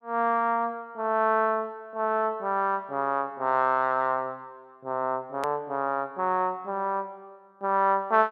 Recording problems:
hard cut with a click; at 5.5 s

